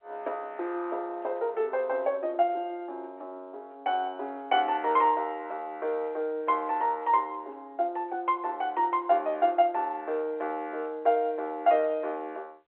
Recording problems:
phone line; 320 Hz to 3.6 kHz, G.711

